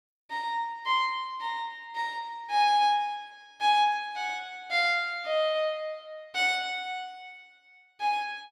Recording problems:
none

